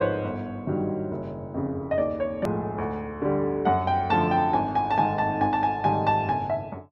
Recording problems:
click at an edit; at 2.5 s

